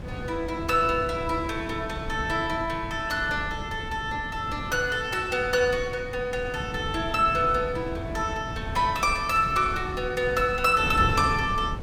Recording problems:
wind noise; below 250 Hz, SNR 10 dB

